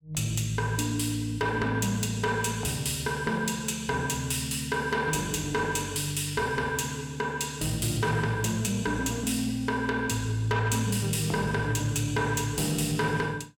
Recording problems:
distortion; soft clipping, signal-to-distortion ratio 11 dB

